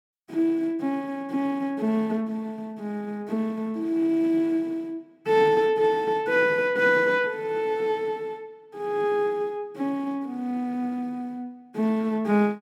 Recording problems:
none

